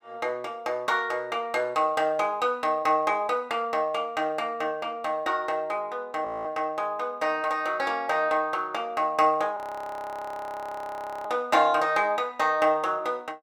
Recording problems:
audio freezing; at 6.5 s and at 9.5 s for 1.5 s

